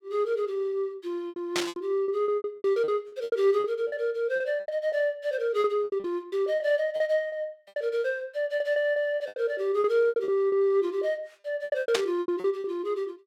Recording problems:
lost packets; 16% of the sound replaced, filled with repeated pitch periods
static burst; at 1.5 s and at 12 s; peak +4 dB vs average level

